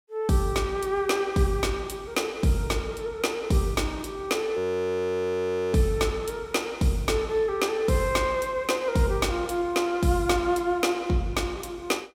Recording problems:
frozen audio; at 4.5 s for 1 s

